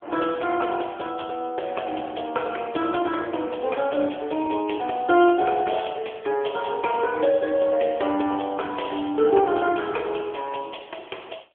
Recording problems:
phone line; 260 Hz to 3.3 kHz, AMR-NB

